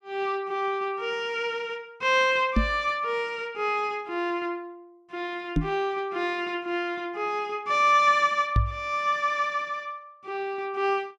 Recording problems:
microphone bump; at 2.5 s, at 5.5 s and at 8.5 s; peak +6 dB vs average level

